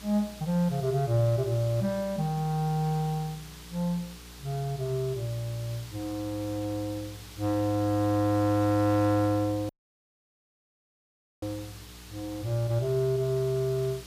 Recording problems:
hum; 60 Hz, harmonics up to 480 Hz, SNR 22 dB
hiss; slope +1 dB per octave, SNR 18 dB
audio cutting out; at 9.5 s for 1.5 s

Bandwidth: 15 kHz